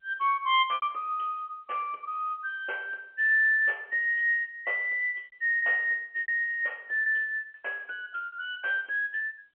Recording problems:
phone line; 320 Hz to 3.2 kHz, G.711
packet loss; 5% of the sound replaced, filled with repeated pitch periods

